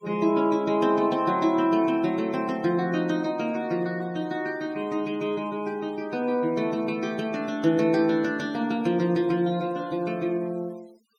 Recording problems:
noise reduction artefacts; signal-to-artefact ratio 26 dB

